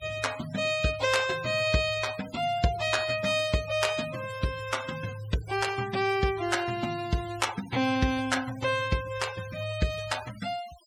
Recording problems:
denoising artefacts; signal-to-artefact ratio 15 dB

